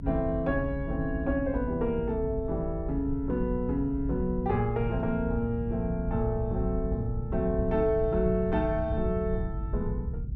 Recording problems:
low-frequency rumble; below 110 Hz, SNR 5 dB

